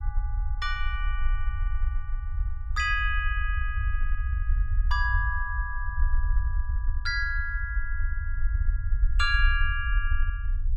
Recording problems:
low-frequency rumble; below 58 Hz, SNR -1 dB

